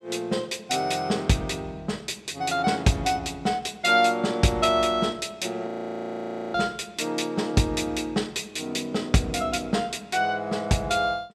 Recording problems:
audio freezing; at 5.5 s for 1 s

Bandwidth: 14 kHz